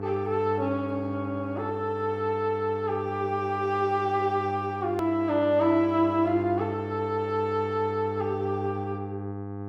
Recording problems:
hum; 50 Hz, harmonics up to 1.6 kHz, SNR 9 dB
edit click; at 5 s

